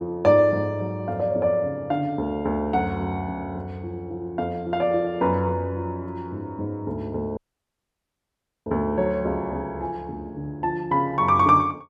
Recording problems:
dropout; at 7.5 s for 1.5 s

